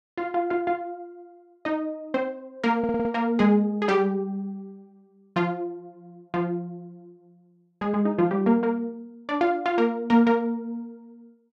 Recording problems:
audio stuttering; at 3 s

